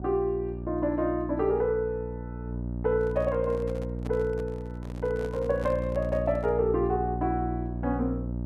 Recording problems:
hum; 60 Hz, harmonics up to 660 Hz, SNR 6 dB
microphone handling noise; from 3 to 6.5 s; peak -8 dB vs average level

